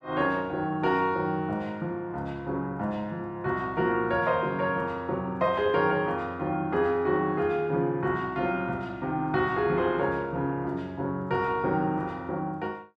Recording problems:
none

